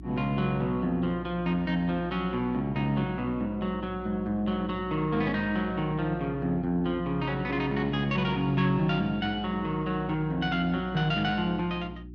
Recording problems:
electrical hum; 60 Hz, harmonics up to 360 Hz, SNR 15 dB

